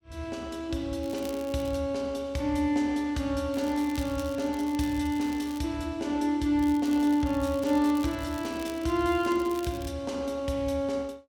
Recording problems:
crackle; at 1 s, from 3.5 to 5.5 s and from 6.5 to 10 s; loose cable, SNR 19 dB

